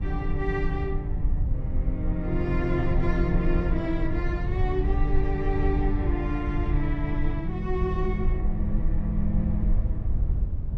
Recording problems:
rumble; below 66 Hz, SNR -1 dB

